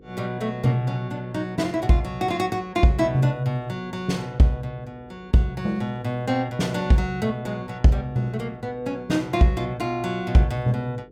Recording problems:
hum; 50 Hz, harmonics up to 500 Hz, SNR 26 dB

